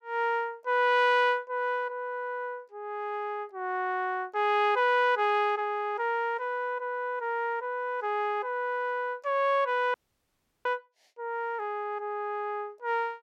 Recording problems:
dropout; at 10 s for 0.5 s

